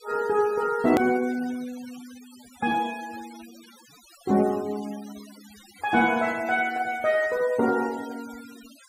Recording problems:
denoising artefacts; signal-to-artefact ratio 21 dB
hard cut with a click; at 1 s

